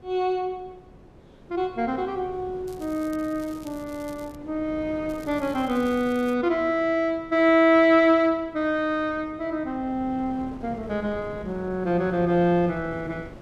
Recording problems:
wind noise; below 460 Hz, SNR 20 dB
crackle; from 2.5 to 4.5 s and from 5 to 6.5 s; loose cable, SNR 26 dB

